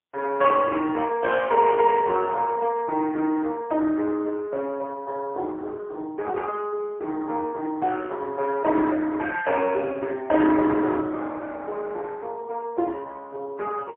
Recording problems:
telephone audio; 280 Hz to 2.8 kHz, AMR-NB, then MP3

